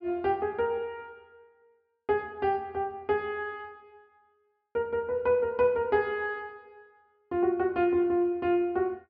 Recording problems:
low-pass filter; nothing above 5.5 kHz

